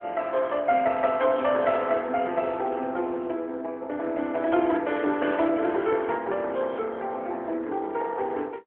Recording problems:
telephone audio; 240 Hz to 3.3 kHz, AMR-NB

